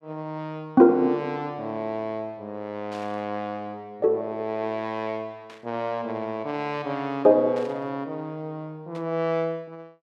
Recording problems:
burst of static; 4 times, first at 3 s; peak -14 dB vs average level

